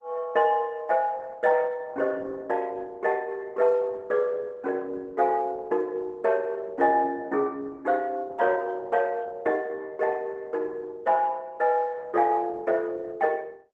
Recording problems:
codec artefacts; Opus, then Opus, log-spectral distance 3 dB

